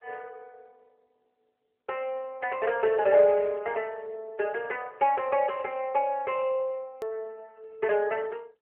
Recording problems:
phone line; 300 Hz to 3.1 kHz, AMR-NB
hard cut with a click; at 7 s

